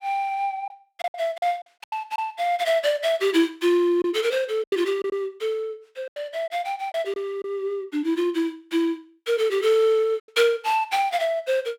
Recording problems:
packet loss; 6% of the sound replaced, filled with silence

